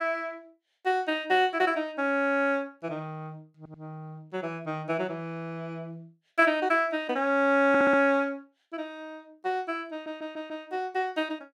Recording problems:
audio stuttering; at 3.5 s, at 7.5 s and at 10 s

